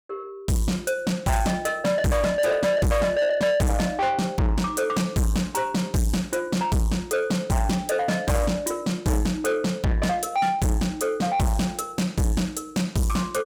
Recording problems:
distortion; soft clipping, signal-to-distortion ratio 6 dB

